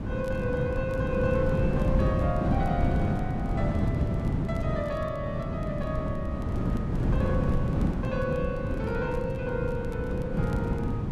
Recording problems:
wind on the microphone; below 240 Hz, SNR -4 dB
crackling; vinyl, SNR 27 dB

